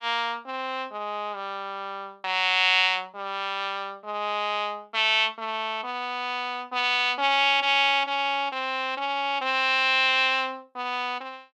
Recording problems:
none

